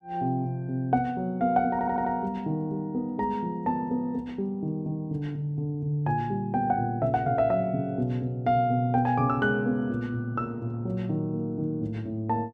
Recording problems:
stutter; at 1.5 s

